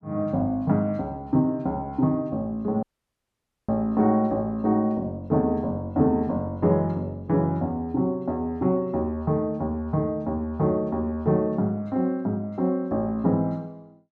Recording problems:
audio cutting out; at 3 s for 1 s

